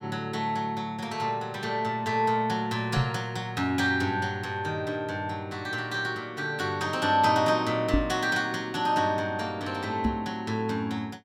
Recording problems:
knock on the microphone; at 3 s, at 8 s and at 10 s; peak +7 dB vs average level

